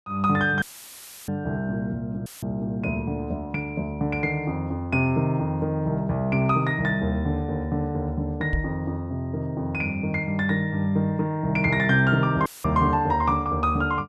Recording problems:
audio cutting out; at 0.5 s for 0.5 s, at 2.5 s and at 12 s; filled with static
knock on the microphone; at 8.5 s; peak +2 dB vs average level

